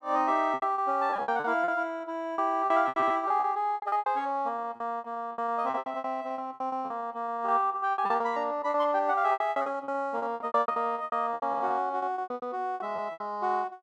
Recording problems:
lost packets; 22% of the sound replaced, filled with repeated pitch periods

